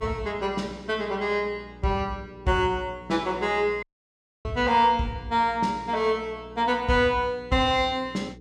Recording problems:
hum; 60 Hz, harmonics up to 480 Hz, SNR 21 dB
audio cutting out; at 4 s for 0.5 s

